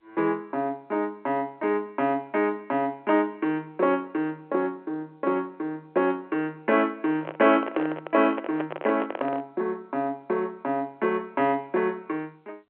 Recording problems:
phone line; 240 Hz to 3.3 kHz, G.711
handling noise; from 7 to 9.5 s; peak +1 dB vs average level

